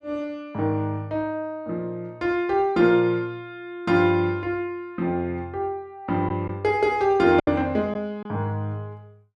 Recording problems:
lost packets; 1.3% of the sound replaced, filled with silence

